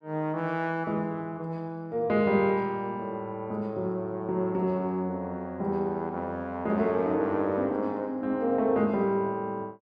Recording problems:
none

